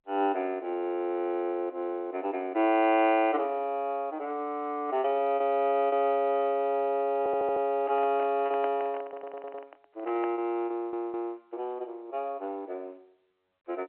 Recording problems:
phone line; 300 Hz to 3.2 kHz, G.711
lost packets; 2% of the sound replaced, filled with repeated pitch periods
audio stuttering; at 7 s, at 9 s and at 11 s
handling noise; from 8 to 10 s; peak -4 dB vs average level

